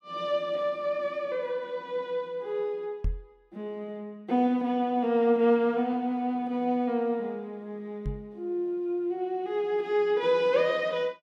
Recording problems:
microphone thump; at 3 s and at 8 s; peak +1 dB vs average level

